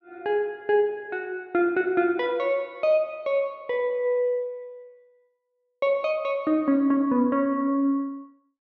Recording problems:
none

